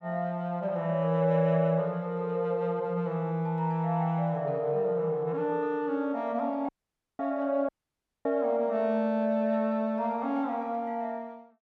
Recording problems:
audio cutting out; at 6.5 s for 0.5 s and at 7.5 s for 0.5 s

